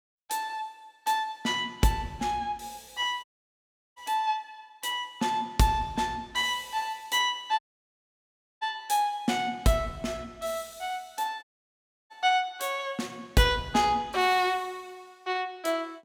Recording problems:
dropout; at 3 s for 0.5 s, at 7.5 s for 1 s and at 11 s for 0.5 s

